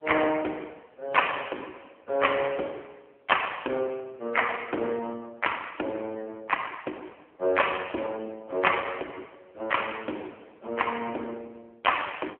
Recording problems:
telephone audio; 260 Hz to 3.2 kHz, AMR-NB

